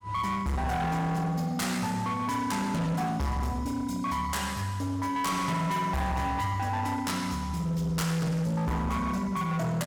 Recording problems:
distorted audio; hard clipping, signal-to-distortion ratio 7 dB

